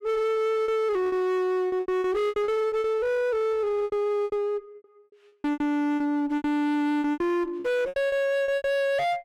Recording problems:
distorted audio; hard clipping, uneven, signal-to-distortion ratio 9 dB
lost packets; 15% of the sound replaced, filled with repeated pitch periods

